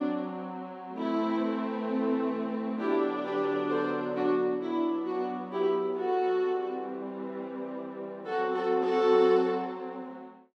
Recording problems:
none

